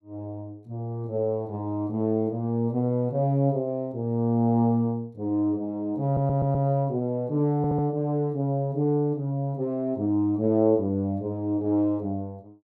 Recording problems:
audio stuttering; at 6 s and at 7.5 s

